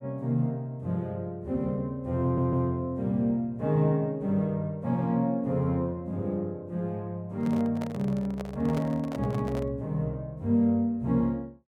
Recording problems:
audio stuttering; at 2 s
microphone handling noise; from 7.5 to 9.5 s; peak -3 dB vs average level

